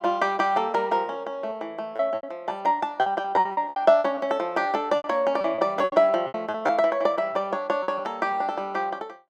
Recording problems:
lost packets; 10% of the sound replaced, filled with repeated pitch periods

